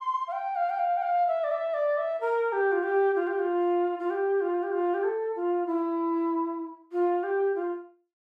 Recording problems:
none

